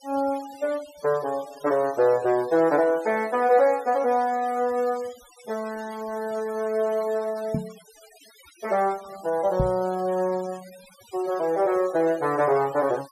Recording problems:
denoising artefacts; signal-to-artefact ratio 22 dB
microphone bump; at 7.5 s and at 9.5 s; peak +2 dB vs average level

